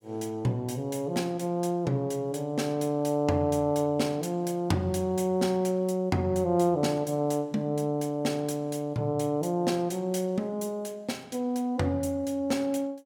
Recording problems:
none

